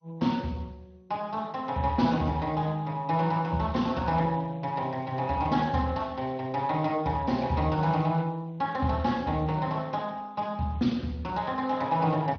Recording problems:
lossy compression; Speex, then MP2, log-spectral distance 3 dB, nothing above 5.7 kHz

